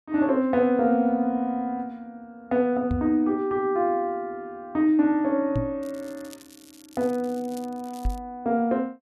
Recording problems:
microphone bump; at 3 s, at 5.5 s and at 8 s; peak 0 dB vs average level
crackle; from 6 to 8 s; loose cable, SNR 25 dB

